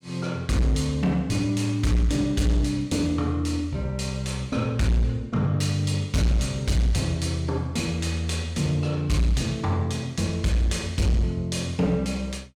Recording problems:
distorted audio; hard clipping, signal-to-distortion ratio 10 dB

